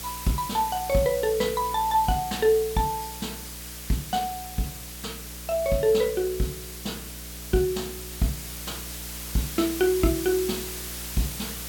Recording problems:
hum; 60 Hz, harmonics up to 660 Hz, SNR 17 dB
background hiss; slope +1 dB per octave, SNR 9 dB

